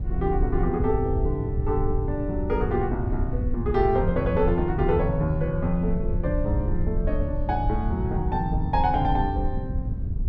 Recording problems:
low-frequency rumble; below 70 Hz, SNR 8 dB
wind on the microphone; below 110 Hz, SNR 4 dB

